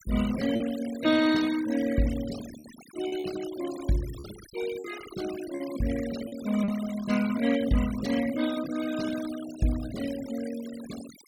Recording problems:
noise reduction artefacts; signal-to-artefact ratio 13 dB
lost packets; 3% of the sound replaced, filled with repeated pitch periods

